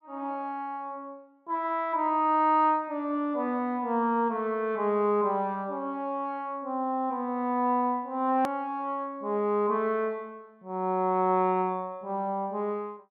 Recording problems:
edit click; at 8.5 s

